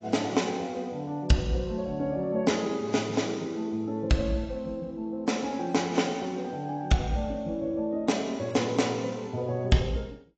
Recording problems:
lossy codec; AAC, log-spectral distance 3 dB, nothing above 7.6 kHz

